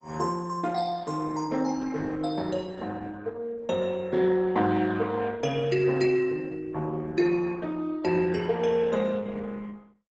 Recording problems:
codec artefacts; Opus, log-spectral distance 3 dB, nothing above 7.6 kHz

